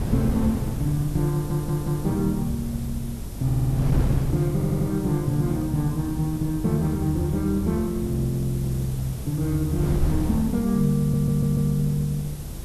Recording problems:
hiss; slope +2 dB per octave, SNR 19 dB
wind on the microphone; below 180 Hz, SNR 8 dB
stutter; 4 times, first at 1.5 s

